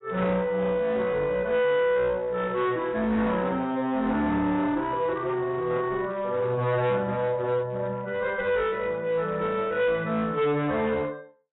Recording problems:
lossy codec; AAC, log-spectral distance 2 dB, nothing above 3.7 kHz
distortion; hard clipping, uneven, signal-to-distortion ratio 9 dB

